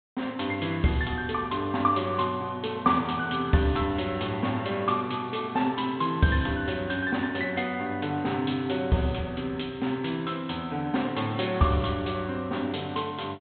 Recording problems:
treble cut off; nothing above 4 kHz

